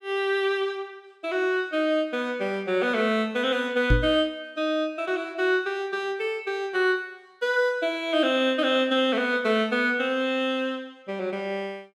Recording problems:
microphone thump; at 4 s; peak +7 dB vs average level

